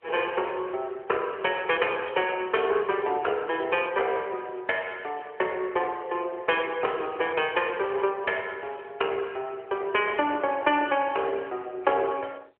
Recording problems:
phone line; 320 Hz to 3.3 kHz, AMR-NB

